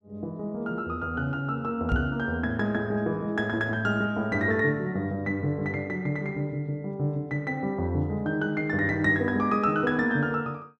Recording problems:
microphone thump; at 2 s; peak +3 dB vs average level

